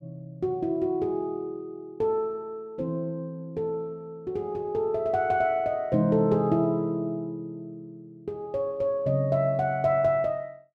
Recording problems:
none

